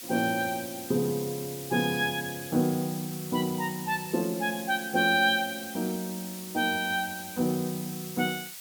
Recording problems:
background hiss; slope +4 dB per octave, SNR 10 dB

